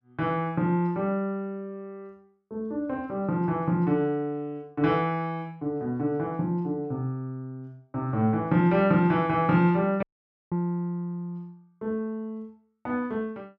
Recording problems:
dropout; at 10 s

